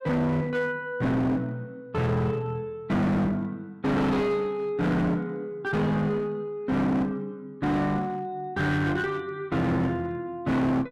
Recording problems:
distorted audio; hard clipping, uneven, signal-to-distortion ratio 6 dB

